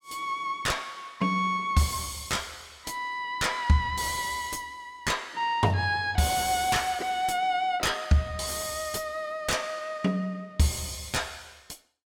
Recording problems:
distorted audio; soft clipping, signal-to-distortion ratio 9 dB

